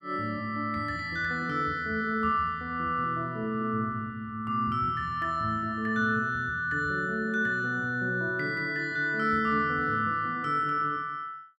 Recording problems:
none

